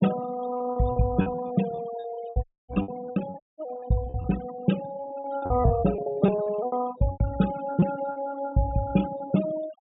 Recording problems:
low-pass filter; nothing above 4 kHz
noise reduction artefacts; signal-to-artefact ratio 12 dB
lost packets; 14% of the sound replaced, filled with repeated pitch periods
dropout; at 2.5 s and at 3.5 s

